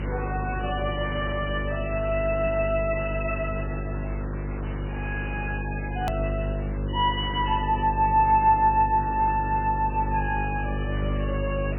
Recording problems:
lossy codec; MP3, log-spectral distance 7 dB, nothing above 2.7 kHz
hum; 50 Hz, harmonics up to 550 Hz, SNR 5 dB
background hiss; SNR 14 dB
click at an edit; at 6 s

